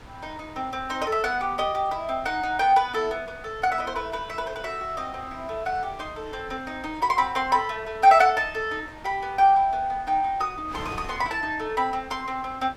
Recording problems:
wind noise; below 1.3 kHz, SNR 20 dB

